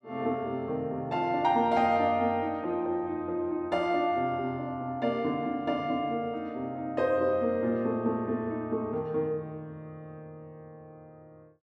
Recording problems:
none

